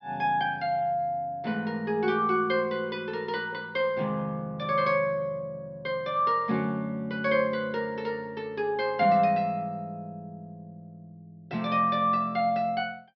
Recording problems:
treble cut off; nothing above 5.5 kHz

